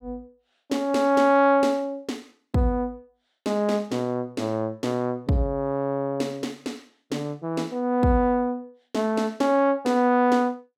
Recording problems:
none

